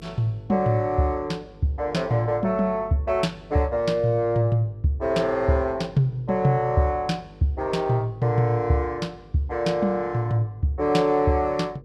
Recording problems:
hum; 50 Hz, harmonics up to 500 Hz, SNR 24 dB

